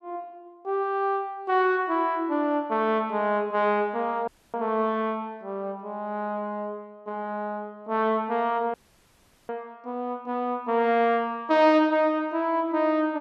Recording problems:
dropout; at 4.5 s and at 8.5 s for 1 s

